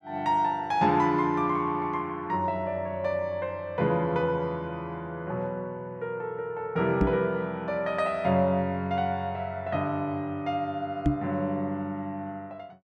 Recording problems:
microphone bump; at 7 s and at 11 s; peak +7 dB vs average level

